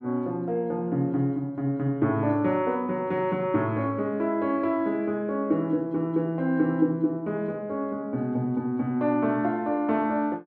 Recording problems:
none

